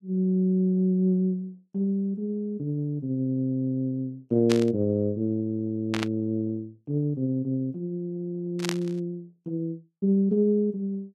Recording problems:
burst of static; at 4.5 s, at 6 s and at 8.5 s; peak +1 dB vs average level

